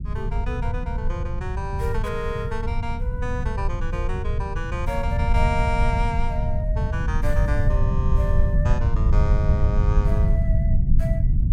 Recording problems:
low-frequency rumble; below 96 Hz, SNR -6 dB

